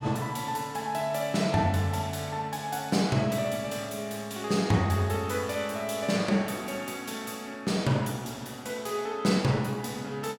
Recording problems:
none

